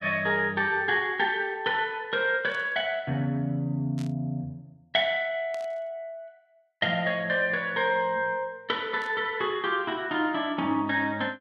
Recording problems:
static burst; 4 times, first at 2.5 s; peak -15 dB vs average level

